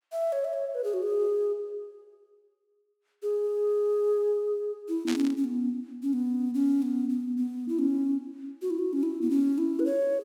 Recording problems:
static burst; at 5 s; peak -3 dB vs average level

